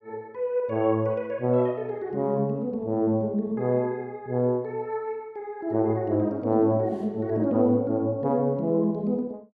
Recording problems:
none

